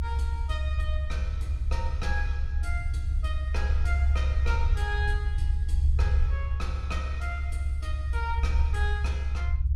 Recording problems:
rumble; below 70 Hz, strongest tone 68 Hz, SNR -9 dB

